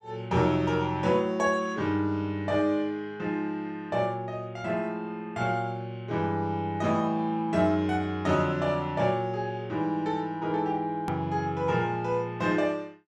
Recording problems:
click at an edit; at 11 s

